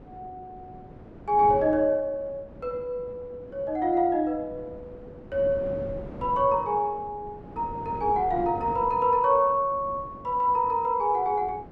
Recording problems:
wind noise; below 430 Hz, SNR 17 dB

